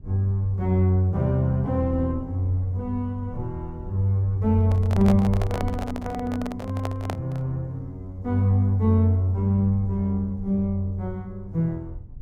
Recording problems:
low-frequency rumble; below 90 Hz, SNR 17 dB
microphone handling noise; from 4.5 to 7.5 s; peak -2 dB vs average level

